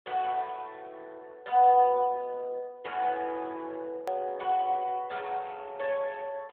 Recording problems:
telephone audio; 280 Hz to 3.5 kHz, AMR-NB
edit click; at 4 s

